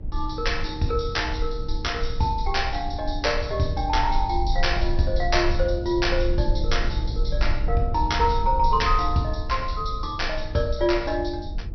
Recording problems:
low-pass filter; nothing above 5.8 kHz
codec artefacts; Vorbis, log-spectral distance 2 dB
low-frequency rumble; below 58 Hz, strongest tone 22 Hz, SNR 5 dB

